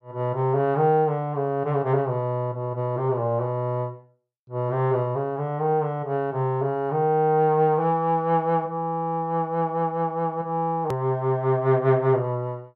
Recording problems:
click at an edit; at 11 s

